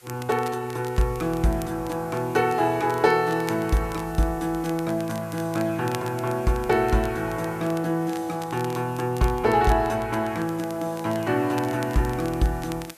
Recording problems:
background hiss; slope -1 dB per octave, SNR 23 dB
crackling; vinyl, SNR 20 dB

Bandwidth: 14.5 kHz